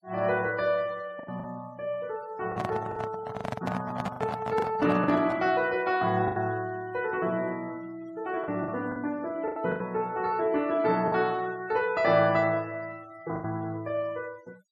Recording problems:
noise reduction artefacts; signal-to-artefact ratio 22 dB
packet loss; 6% of the sound replaced, filled with the last packet
microphone handling noise; from 2.5 to 5.5 s; peak 0 dB vs average level

